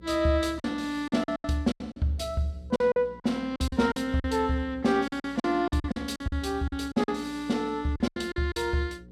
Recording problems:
electrical hum; 60 Hz, harmonics up to 540 Hz, SNR 22 dB
packet loss; 14% of the sound replaced, filled with silence

